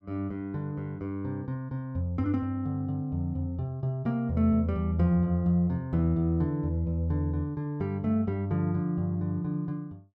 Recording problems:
none

